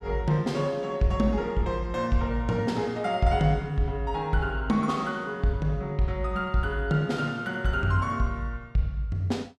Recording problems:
none

